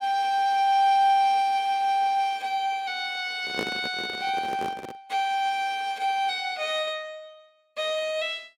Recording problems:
handling noise; from 3.5 to 5 s; peak -2 dB vs average level

